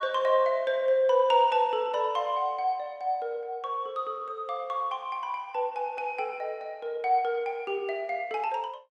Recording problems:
none

